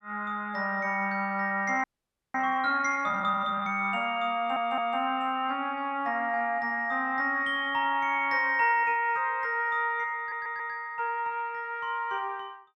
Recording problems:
frozen audio; at 2 s
audio stuttering; at 4.5 s and at 10 s

